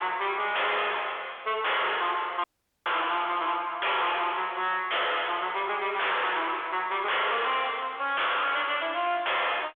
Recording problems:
phone line; 300 Hz to 3.4 kHz, G.726
distortion; soft clipping, signal-to-distortion ratio 5 dB
audio cutting out; at 2.5 s

